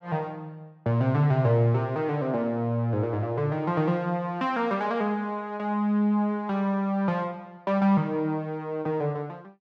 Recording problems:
none

